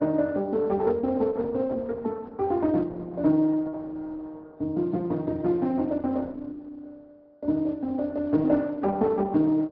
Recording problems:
low-pass filter; nothing above 5.5 kHz
lossy codec; Opus, log-spectral distance 2 dB

